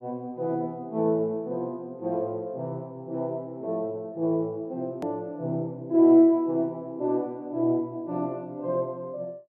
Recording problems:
edit click; at 5 s

